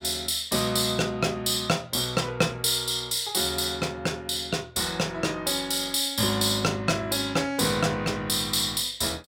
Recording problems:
none

